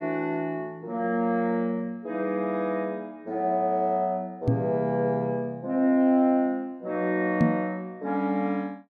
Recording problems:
knock on the microphone; at 4.5 s and at 7.5 s; peak +8 dB vs average level

